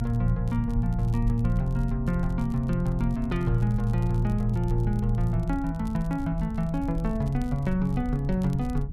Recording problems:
low-frequency rumble; below 68 Hz, strongest tone 40 Hz, SNR 6 dB
crackle; vinyl, SNR 29 dB

